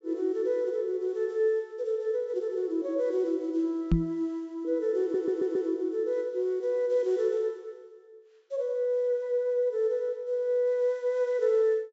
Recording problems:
treble cut off; nothing above 7.5 kHz
microphone bump; at 4 s; peak +8 dB vs average level
audio stuttering; at 5 s

